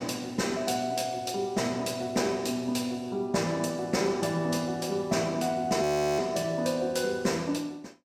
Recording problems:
audio freezing; at 6 s

